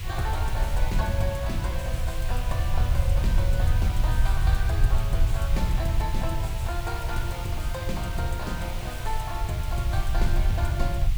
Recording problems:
hiss; SNR 7 dB
rumble; below 80 Hz, SNR -5 dB

